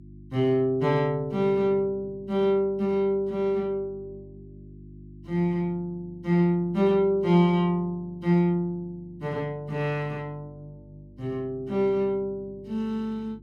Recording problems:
electrical hum; 50 Hz, harmonics up to 350 Hz, SNR 22 dB

